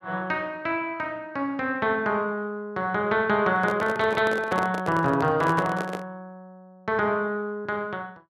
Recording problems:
handling noise; from 3.5 to 6 s; peak 0 dB vs average level

